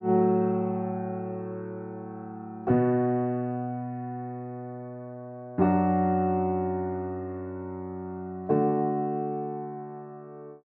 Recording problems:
treble cut off; nothing above 8 kHz

